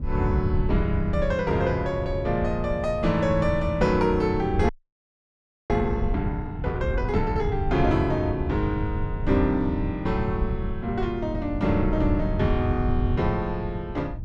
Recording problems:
wind on the microphone; below 110 Hz, SNR 5 dB
audio freezing; at 4.5 s for 1 s

